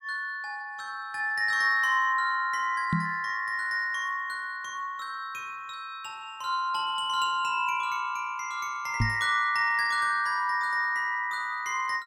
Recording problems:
knock on the microphone; at 3 s and at 9 s; peak +4 dB vs average level

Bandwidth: 16 kHz